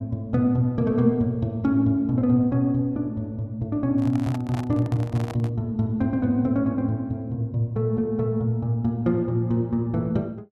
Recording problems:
handling noise; from 4 to 5.5 s; peak -8 dB vs average level

